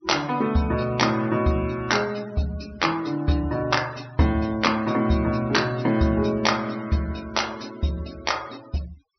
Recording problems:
treble cut off; nothing above 5.9 kHz
denoising artefacts; signal-to-artefact ratio 21 dB

